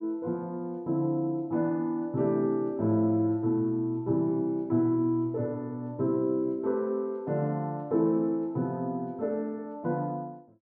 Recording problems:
treble cut off; nothing above 8 kHz

